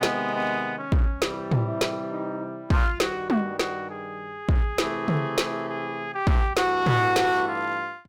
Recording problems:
distorted audio; hard clipping, uneven, signal-to-distortion ratio 10 dB

